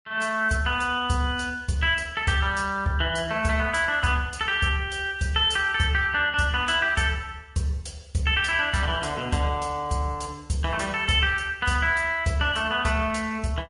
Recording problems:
lossy compression; MP3, log-spectral distance 3 dB, nothing above 9.8 kHz

